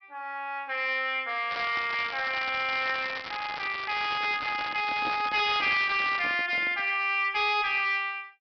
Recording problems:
low-pass filter; nothing above 5.5 kHz
distorted audio; hard clipping, uneven, signal-to-distortion ratio 9 dB
crackle; from 1.5 to 6 s; loose cable, SNR 11 dB
handling noise; from 4 to 7 s; peak -8 dB vs average level

